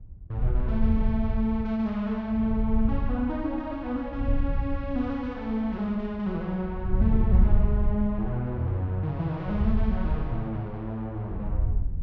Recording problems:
wind noise; below 78 Hz, SNR 0 dB

